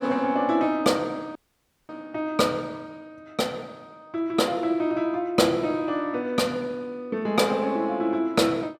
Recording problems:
dropout; at 1.5 s for 0.5 s

